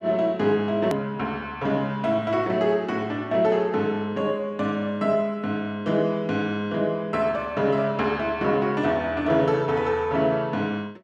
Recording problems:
edit click; at 1 s

